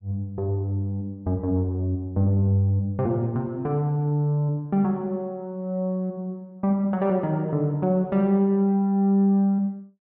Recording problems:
none

